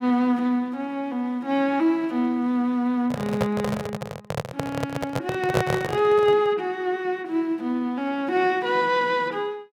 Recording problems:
handling noise; from 3 to 6.5 s; peak +5 dB vs average level

